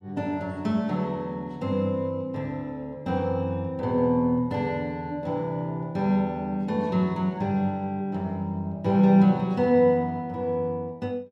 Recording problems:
none

